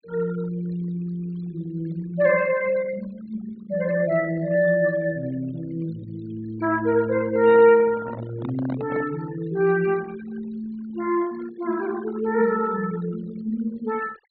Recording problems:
low-pass filter; nothing above 4.5 kHz
denoising artefacts; signal-to-artefact ratio 20 dB
microphone handling noise; from 7.5 to 9 s; peak -7 dB vs average level

